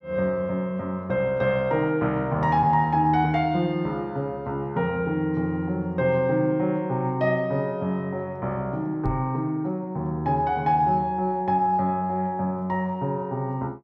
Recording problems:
microphone thump; at 9 s; peak -2 dB vs average level

